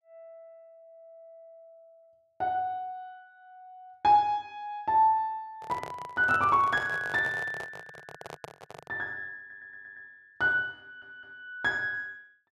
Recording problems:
microphone handling noise; from 5.5 to 9 s; peak -7 dB vs average level
stutter; at 9.5 s and at 11 s

